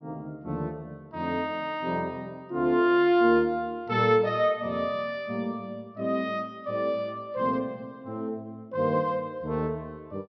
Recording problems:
low-pass filter; nothing above 5.9 kHz

